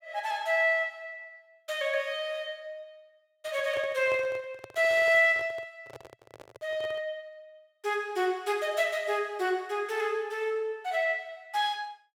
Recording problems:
handling noise; from 3.5 to 7 s; peak -10 dB vs average level

